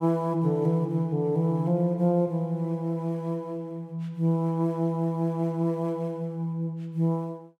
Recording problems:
none

